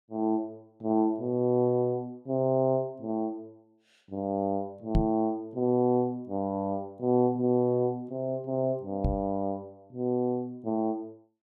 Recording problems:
microphone bump; at 5 s and at 9 s; peak +6 dB vs average level

